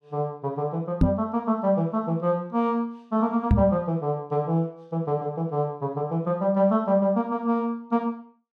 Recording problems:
knock on the microphone; at 1 s and at 3.5 s; peak +9 dB vs average level

